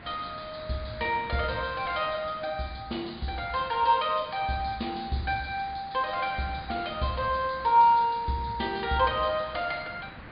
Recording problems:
treble cut off; nothing above 4.9 kHz
hiss; SNR 18 dB

